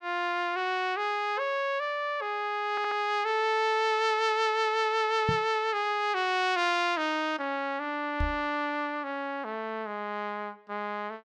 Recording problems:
stutter; at 2.5 s
microphone bump; at 5.5 s and at 8 s; peak +2 dB vs average level

